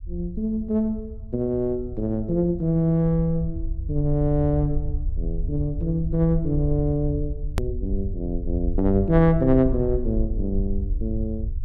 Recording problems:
rumble; below 64 Hz, SNR 7 dB
hard cut with a click; at 7.5 s

